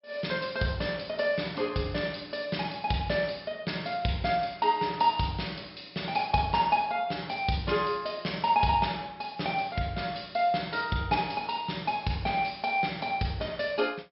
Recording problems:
low-pass filter; nothing above 5.4 kHz

